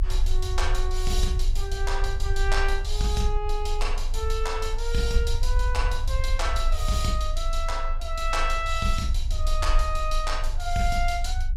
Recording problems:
low-frequency rumble; below 46 Hz, strongest tone 24 Hz, SNR 0 dB

